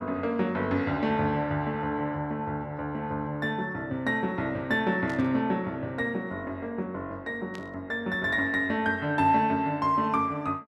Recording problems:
static burst; at 5 s and at 7.5 s; peak -12 dB vs average level

